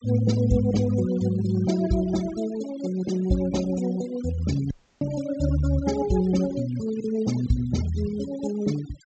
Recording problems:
treble cut off; nothing above 8 kHz
noise reduction artefacts; signal-to-artefact ratio 16 dB
dropout; at 4.5 s

